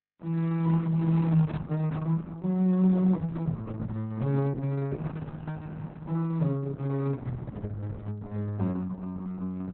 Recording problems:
lossy codec; Opus, then Opus, log-spectral distance 3 dB, nothing above 4 kHz

